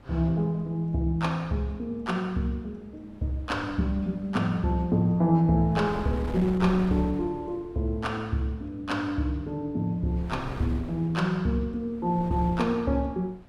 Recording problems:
wind on the microphone; below 390 Hz, SNR 15 dB

